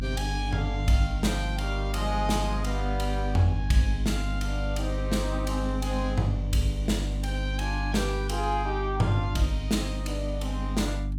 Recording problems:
hum; 50 Hz, harmonics up to 300 Hz, SNR 2 dB

